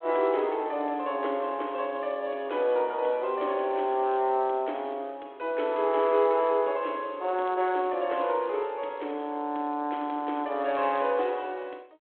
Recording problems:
phone line; 260 Hz to 3.5 kHz, G.726

